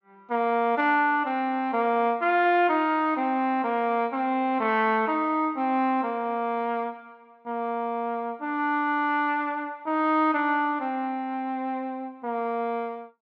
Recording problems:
treble cut off; nothing above 7.9 kHz

